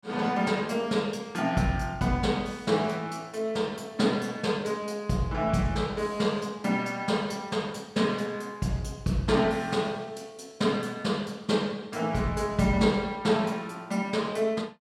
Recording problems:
none

